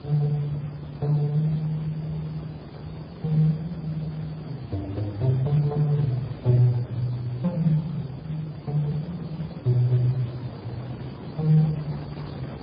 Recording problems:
lossy codec; Speex, then MP3, log-spectral distance 3 dB, nothing above 11.3 kHz
low-frequency rumble; below 180 Hz, SNR 23 dB
wind on the microphone; below 570 Hz, SNR 14 dB

